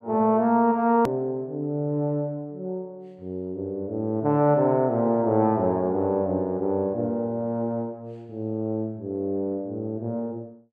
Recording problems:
click at an edit; at 1 s

